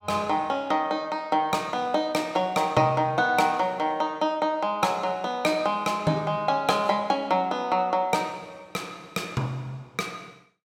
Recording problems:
none

